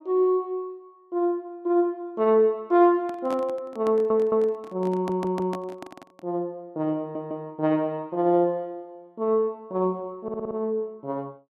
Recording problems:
microphone handling noise; from 3 to 6.5 s; peak -6 dB vs average level
stutter; 4 times, first at 4 s

